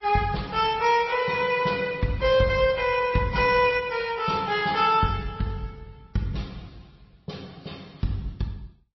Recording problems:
lossy compression; Opus, then MP3, log-spectral distance 3 dB, nothing above 5.7 kHz

